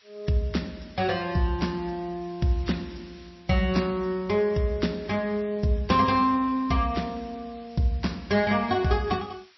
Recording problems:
lossy compression; MP3, log-spectral distance 6 dB, nothing above 5.7 kHz
hiss; SNR 28 dB

